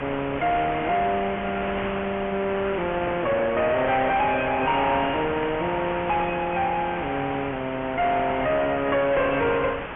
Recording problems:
treble cut off; nothing above 2.8 kHz
lossy compression; AAC, log-spectral distance 2 dB
distorted audio; soft clipping, signal-to-distortion ratio 8 dB
hiss; SNR 8 dB
microphone handling noise; from 3 to 6 s; peak -3 dB vs average level

